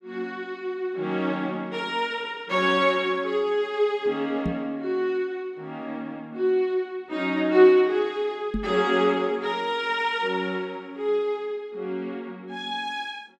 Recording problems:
microphone bump; at 4.5 s and at 8.5 s; peak +1 dB vs average level

